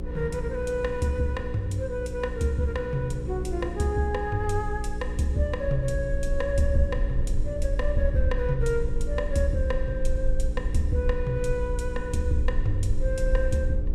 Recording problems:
hum; 60 Hz, harmonics up to 540 Hz, SNR 7 dB
rumble; below 50 Hz, SNR 4 dB
wind noise; below 88 Hz, SNR 14 dB

